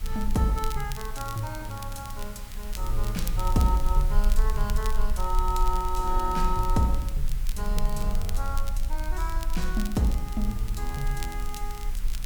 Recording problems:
hum; 60 Hz, harmonics up to 540 Hz, SNR 19 dB
hiss; slope -1 dB per octave, SNR 15 dB
low-frequency rumble; below 44 Hz, SNR 1 dB
crackling; vinyl, SNR 14 dB

